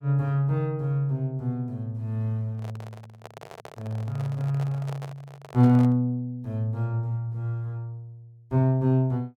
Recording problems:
handling noise; from 2.5 to 6 s; peak -11 dB vs average level

